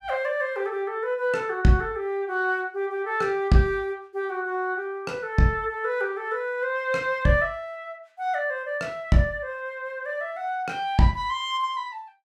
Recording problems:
none

